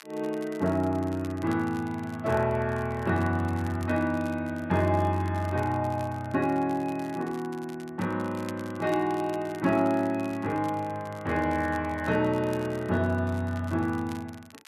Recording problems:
crackle; vinyl, SNR 23 dB

